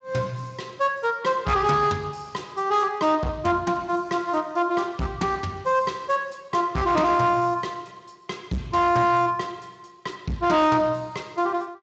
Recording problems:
lossy compression; Speex, log-spectral distance 3 dB, nothing above 7.3 kHz
distortion; hard clipping, signal-to-distortion ratio 11 dB

